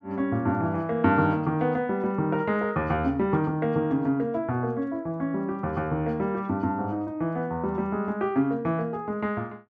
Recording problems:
none

